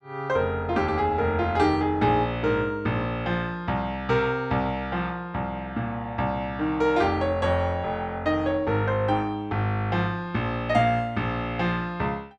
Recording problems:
none

